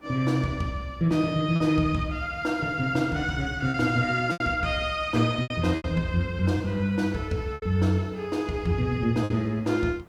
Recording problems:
background hiss; slope -8 dB per octave, SNR 26 dB
lost packets; 5% of the sound replaced, filled with repeated pitch periods

